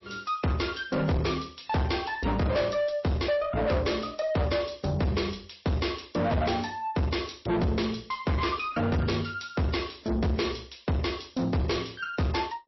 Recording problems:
lossy compression; MP3, log-spectral distance 8 dB, nothing above 5.7 kHz
distorted audio; soft clipping, signal-to-distortion ratio 6 dB

